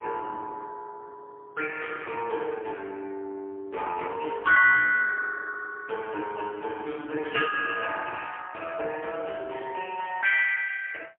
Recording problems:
phone line; 320 Hz to 2.8 kHz, AMR-NB, then MP3

